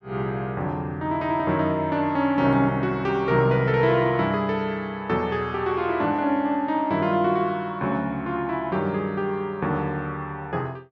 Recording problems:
none

